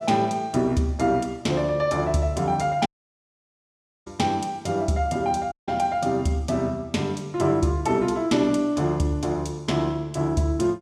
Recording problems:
audio cutting out; at 3 s for 1 s and at 5.5 s

